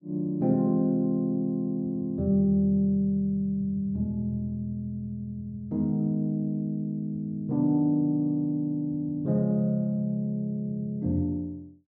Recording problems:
none

